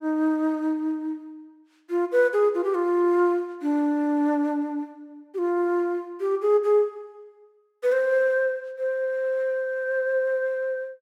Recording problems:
none

